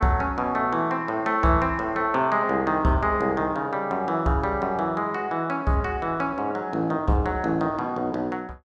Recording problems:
none

